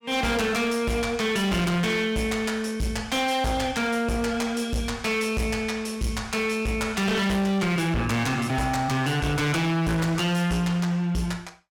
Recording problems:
distortion; hard clipping, signal-to-distortion ratio 7 dB

